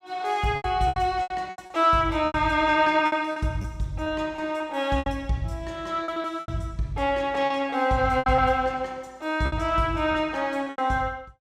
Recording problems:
lost packets; 11% of the sound replaced, filled with repeated pitch periods

